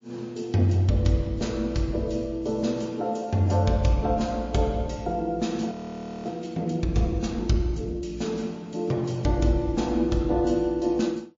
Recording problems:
lossy codec; MP3, log-spectral distance 3 dB
frozen audio; at 5.5 s for 0.5 s

